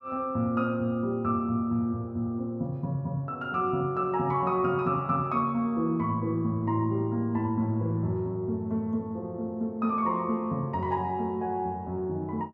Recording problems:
none

